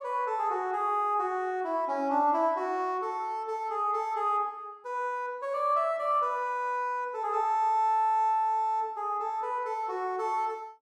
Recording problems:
none

